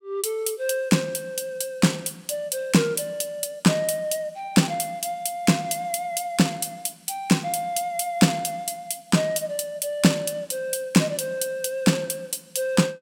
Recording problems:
none

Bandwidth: 16.5 kHz